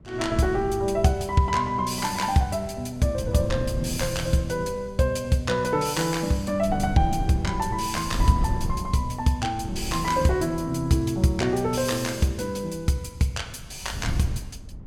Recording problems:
wind noise; below 120 Hz, SNR 8 dB

